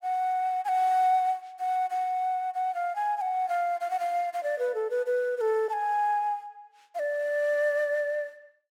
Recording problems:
none

